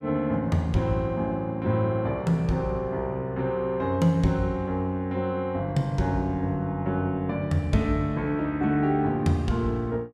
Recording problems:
none

